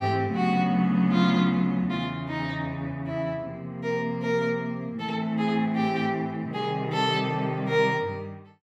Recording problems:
none

